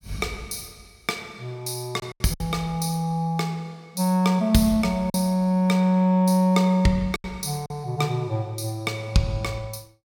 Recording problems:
packet loss; 3% of the sound replaced, filled with silence

